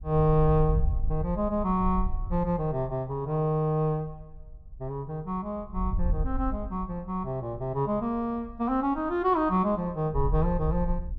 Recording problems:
wind noise; below 66 Hz, SNR 5 dB

